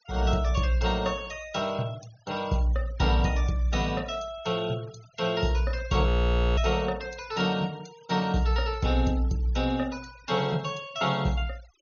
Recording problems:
treble cut off; nothing above 6.6 kHz
noise reduction artefacts; signal-to-artefact ratio 21 dB
audio freezing; at 6 s for 0.5 s

